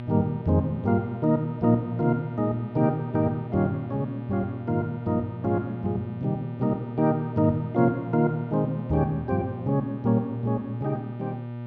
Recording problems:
mains hum; 60 Hz, harmonics up to 1.2 kHz, SNR 9 dB

